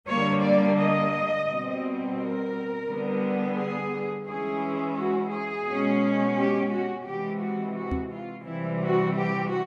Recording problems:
microphone bump; at 8 s; peak 0 dB vs average level

